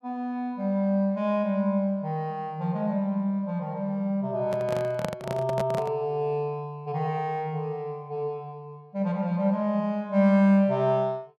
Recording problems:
handling noise; from 4.5 to 6 s; peak +1 dB vs average level

